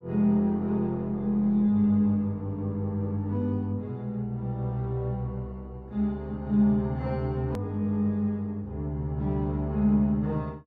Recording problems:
edit click; at 7.5 s

